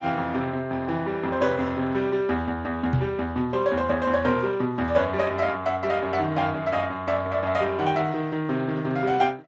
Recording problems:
codec artefacts; Speex, log-spectral distance 3 dB, nothing above 7.3 kHz
microphone bump; at 3 s; peak +5 dB vs average level

